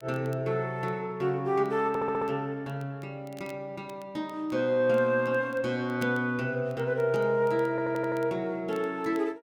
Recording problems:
crackling; vinyl, SNR 29 dB
stutter; at 2 s and at 7.5 s

